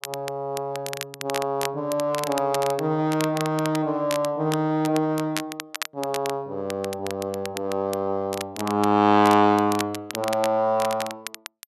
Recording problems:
crackling; vinyl, SNR 12 dB

